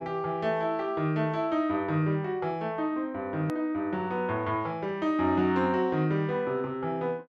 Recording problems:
edit click; at 3.5 s

